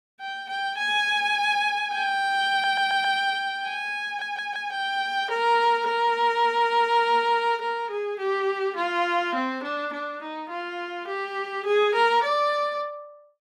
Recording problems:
audio stuttering; at 2.5 s and at 4 s

